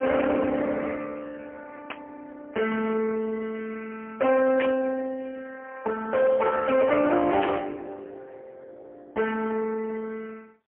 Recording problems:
telephone audio; 260 Hz to 3.1 kHz, AMR-NB, then MP3
distortion; hard clipping, signal-to-distortion ratio 12 dB
static burst; at 2 s, at 4.5 s and at 7.5 s; peak -2 dB vs average level

